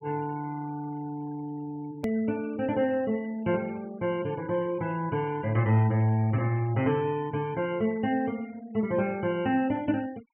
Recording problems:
low-pass filter; nothing above 3 kHz
noise reduction artefacts; signal-to-artefact ratio 22 dB
hard cut with a click; at 2 s

